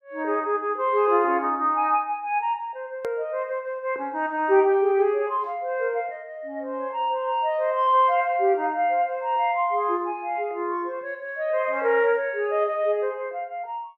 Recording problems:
edit click; at 3 s

